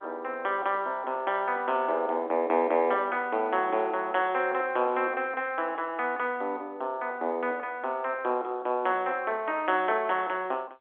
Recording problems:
phone line; 260 Hz to 3.4 kHz, G.711

